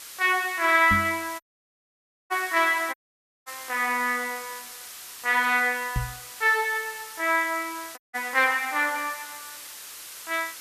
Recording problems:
background hiss; slope +2 dB per octave, SNR 15 dB
knock on the microphone; at 1 s and at 6 s; peak -1 dB vs average level
audio cutting out; at 1.5 s for 1 s, at 3 s for 0.5 s and at 8 s

